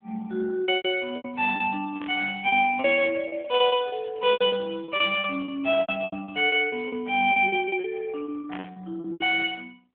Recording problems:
phone line; 220 Hz to 3.4 kHz, AMR-NB
lost packets; 16% of the sound replaced, filled with repeated pitch periods
static burst; at 2 s, at 3.5 s and at 8.5 s; peak -10 dB vs average level

